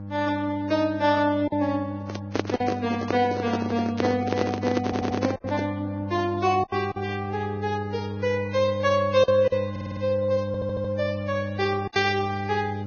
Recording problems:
codec artefacts; Vorbis, log-spectral distance 3 dB, nothing above 6.3 kHz
hum; 50 Hz, harmonics up to 1.1 kHz, SNR 8 dB
lost packets; 4% of the sound replaced, filled with silence
handling noise; from 2 to 5.5 s; peak +5 dB vs average level
audio stuttering; at 5 s, at 9.5 s and at 10 s

